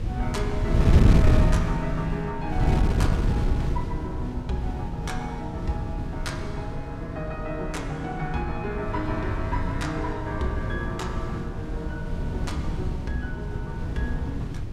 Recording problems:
electrical hum; 50 Hz, harmonics up to 450 Hz, SNR 21 dB
wind noise; below 150 Hz, SNR -4 dB

